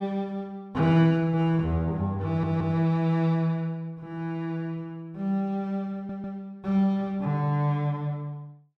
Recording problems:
audio stuttering; at 2.5 s and at 6 s

